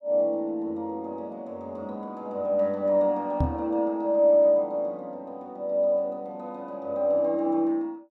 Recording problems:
microphone bump; at 3.5 s; peak +4 dB vs average level

